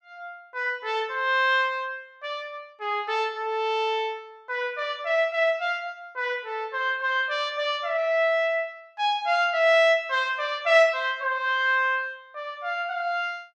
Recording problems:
none

